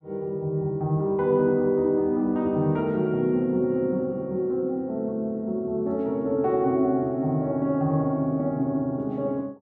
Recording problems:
none

